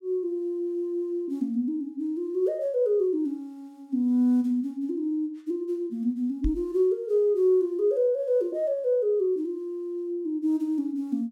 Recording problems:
knock on the microphone; at 6.5 s; peak +1 dB vs average level

